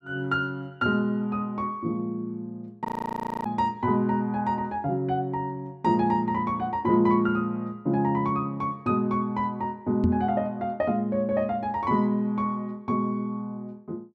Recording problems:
frozen audio; at 3 s for 0.5 s
microphone thump; at 10 s; peak +7 dB vs average level

